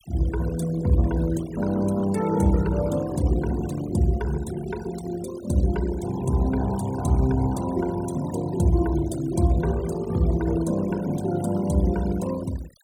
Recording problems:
denoising artefacts; signal-to-artefact ratio 17 dB

